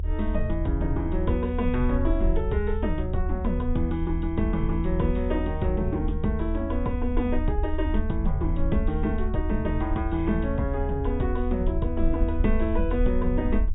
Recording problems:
treble cut off; nothing above 4 kHz
rumble; below 76 Hz, SNR 2 dB

